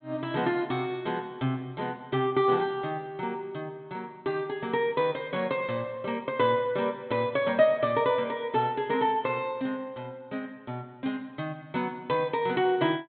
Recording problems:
treble cut off; nothing above 4 kHz

